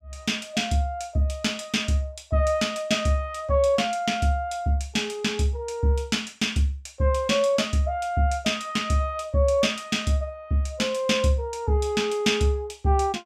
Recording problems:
none

